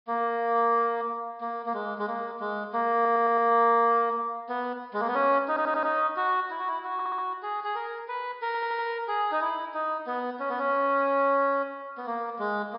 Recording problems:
treble missing; nothing above 5.5 kHz
audio stuttering; 4 times, first at 3 s

